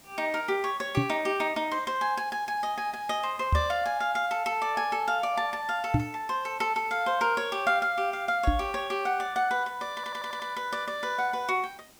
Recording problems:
hiss; slope -2 dB per octave, SNR 25 dB
knock on the microphone; 4 times, first at 1 s; peak +7 dB vs average level
audio stuttering; at 10 s

